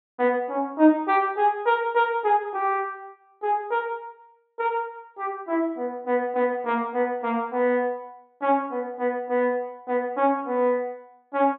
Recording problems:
low-pass filter; nothing above 4 kHz

